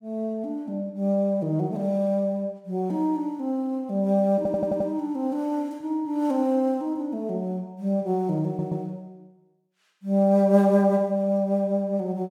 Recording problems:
stutter; at 4.5 s and at 8.5 s

